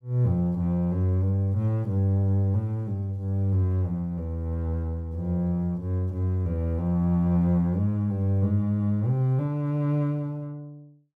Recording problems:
none

